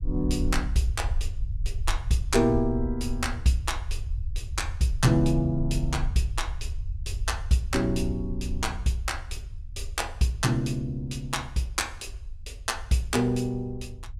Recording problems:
rumble; below 72 Hz, SNR 7 dB

